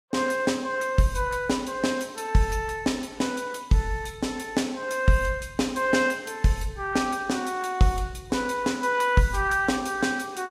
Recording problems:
lossy compression; Vorbis, log-spectral distance 3 dB, nothing above 14.3 kHz

